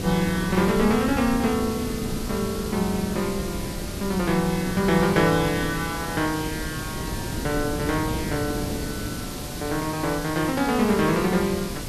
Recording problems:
background hiss; slope -1 dB per octave, SNR 11 dB
wind on the microphone; below 320 Hz, SNR 8 dB

